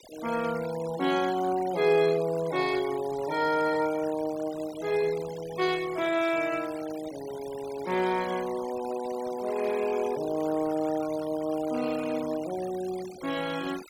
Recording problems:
denoising artefacts; signal-to-artefact ratio 16 dB

